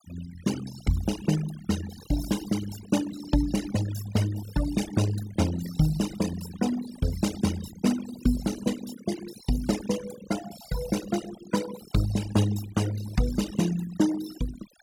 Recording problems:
denoising artefacts; signal-to-artefact ratio 11 dB

